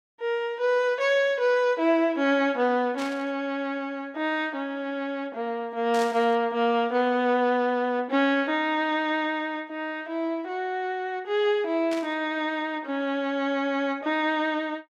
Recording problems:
burst of static; at 3 s, at 6 s and at 12 s; peak -7 dB vs average level

